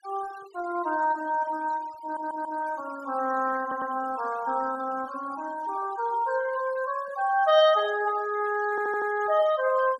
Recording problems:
denoising artefacts; signal-to-artefact ratio 19 dB
audio stuttering; at 2 s, at 3.5 s and at 8.5 s

